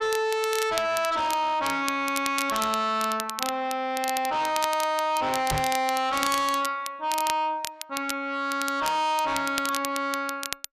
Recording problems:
distorted audio; soft clipping, signal-to-distortion ratio 7 dB
crackling; vinyl, SNR 9 dB
microphone bump; at 5.5 s; peak +2 dB vs average level

